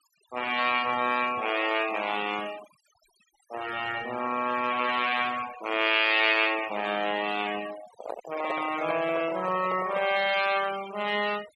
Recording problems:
noise reduction artefacts; signal-to-artefact ratio 14 dB
handling noise; from 8 to 10 s; peak -2 dB vs average level

